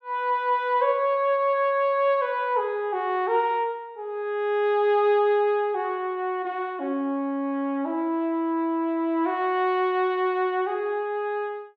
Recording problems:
treble cut off; nothing above 8 kHz

